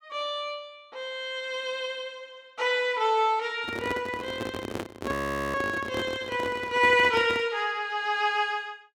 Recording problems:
microphone handling noise; from 3.5 to 7.5 s; peak -2 dB vs average level
frozen audio; at 5 s

